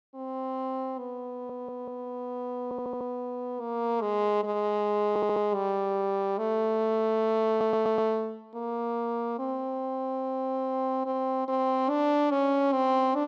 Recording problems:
stutter; 4 times, first at 1.5 s

